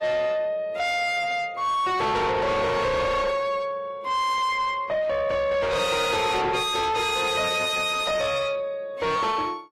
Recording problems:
lossy codec; AAC, log-spectral distance 3 dB, nothing above 13.8 kHz
distortion; soft clipping, signal-to-distortion ratio 7 dB

